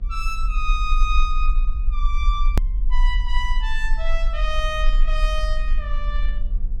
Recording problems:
electrical hum; 50 Hz, harmonics up to 700 Hz, SNR 17 dB
low-frequency rumble; below 40 Hz, strongest tone 22 Hz, SNR -4 dB
hard cut with a click; at 2.5 s

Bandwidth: 16.5 kHz